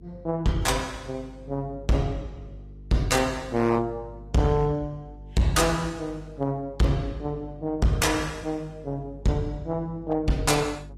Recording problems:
lossy compression; AAC, log-spectral distance 2 dB, nothing above 13.8 kHz
distortion; hard clipping, signal-to-distortion ratio 12 dB
electrical hum; 50 Hz, harmonics up to 450 Hz, SNR 18 dB

